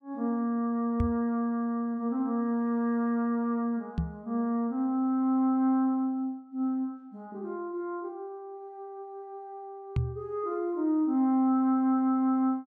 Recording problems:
microphone thump; at 1 s, at 4 s and at 10 s; peak +3 dB vs average level

